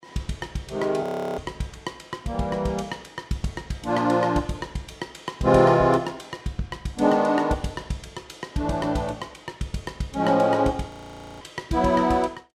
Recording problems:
frozen audio; at 1 s and at 11 s for 0.5 s

